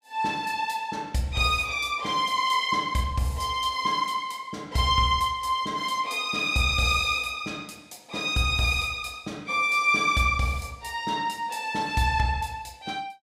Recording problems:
none

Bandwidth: 15.5 kHz